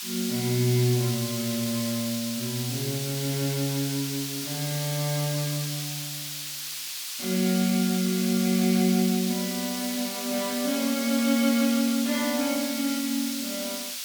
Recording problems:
background hiss; slope +6 dB per octave, SNR 4 dB

